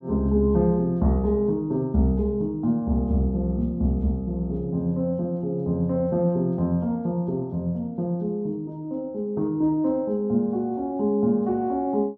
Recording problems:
none

